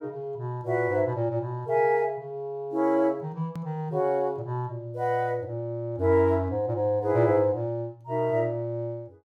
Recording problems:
edit click; at 3.5 s

